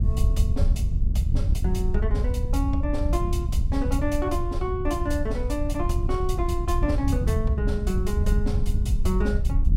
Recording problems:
wind on the microphone; below 82 Hz, SNR -3 dB

